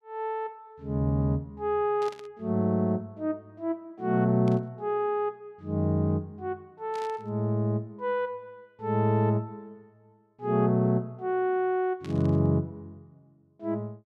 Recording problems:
static burst; 4 times, first at 2 s; peak -12 dB vs average level

